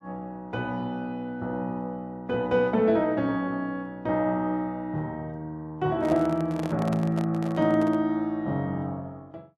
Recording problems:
handling noise; from 6 to 8 s; peak -5 dB vs average level

